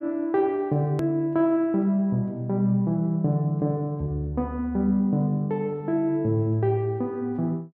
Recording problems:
click at an edit; at 1 s

